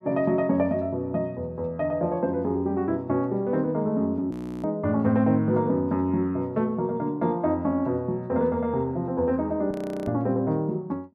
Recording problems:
frozen audio; at 4.5 s and at 9.5 s

